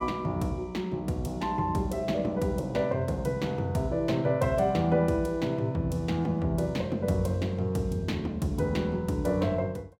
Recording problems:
none

